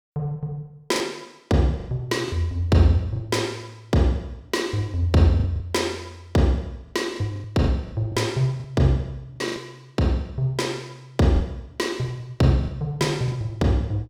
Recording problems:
packet loss; 6% of the sound replaced, filled with the last packet

